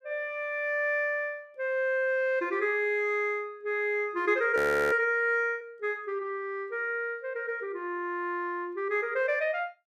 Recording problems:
frozen audio; at 4.5 s

